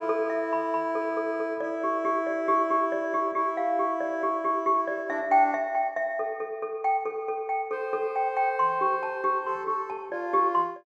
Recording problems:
none

